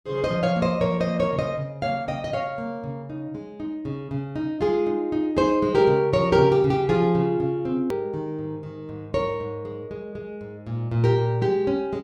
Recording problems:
hard cut with a click; at 8 s

